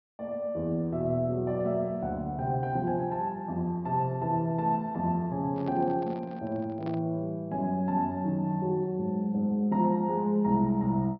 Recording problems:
treble missing; nothing above 5.5 kHz
handling noise; from 5.5 to 7 s; peak -10 dB vs average level

